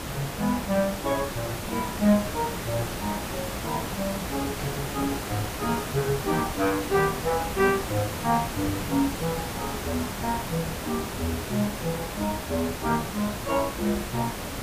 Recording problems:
electrical hum; 60 Hz, harmonics up to 420 Hz, SNR 18 dB
background hiss; slope -4 dB per octave, SNR 4 dB
burst of static; at 4.5 s; peak -11 dB vs average level

